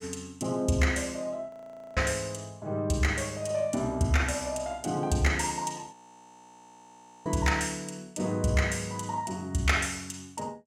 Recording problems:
audio freezing; at 1.5 s and at 6 s for 1.5 s

